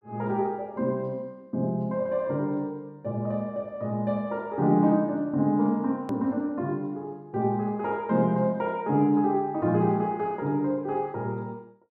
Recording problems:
click at an edit; at 6 s

